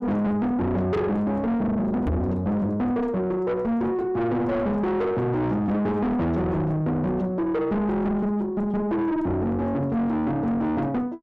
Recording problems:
distorted audio; soft clipping, signal-to-distortion ratio 6 dB
microphone thump; at 2 s; peak +4 dB vs average level

